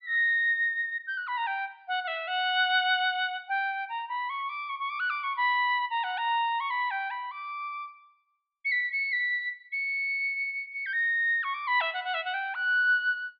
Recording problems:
treble cut off; nothing above 5.5 kHz

